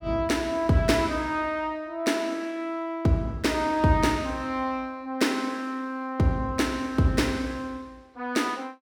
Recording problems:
none

